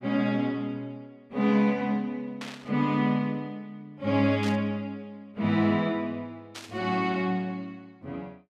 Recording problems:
static burst; at 2.5 s, at 4.5 s and at 6.5 s; peak -7 dB vs average level

